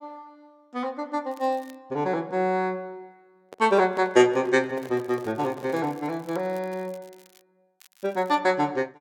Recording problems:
crackling; at 1.5 s, from 5 to 7.5 s and at 8 s; loose cable, SNR 29 dB
microphone handling noise; from 3.5 to 6 s; peak -10 dB vs average level

